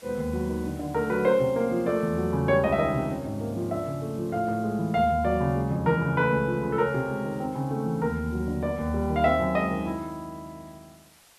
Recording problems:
hiss; SNR 27 dB

